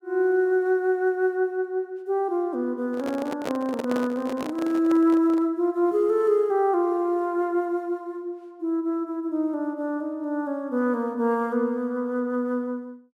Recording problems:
handling noise; from 3 to 5.5 s; peak -2 dB vs average level

